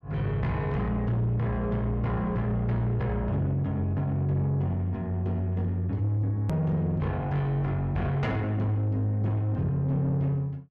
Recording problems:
distorted audio; soft clipping, signal-to-distortion ratio 12 dB
hard cut with a click; at 6.5 s

